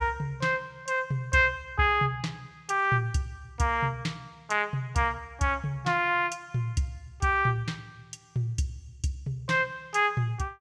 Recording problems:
none

